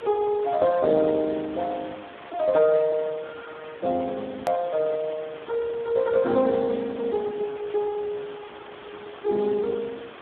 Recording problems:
phone line; 240 Hz to 2.1 kHz, Speex
hiss; SNR 17 dB
click at an edit; at 4.5 s

